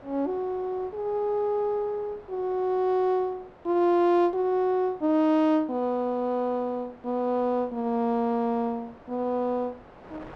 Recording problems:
wind noise; below 1.1 kHz, SNR 24 dB

